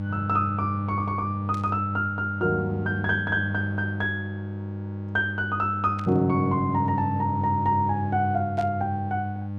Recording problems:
hum; 50 Hz, harmonics up to 800 Hz, SNR 5 dB
static burst; at 1.5 s, at 6 s and at 8.5 s; peak -13 dB vs average level

